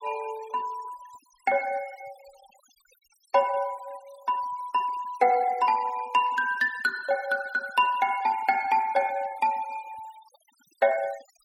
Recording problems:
noise reduction artefacts; signal-to-artefact ratio 23 dB

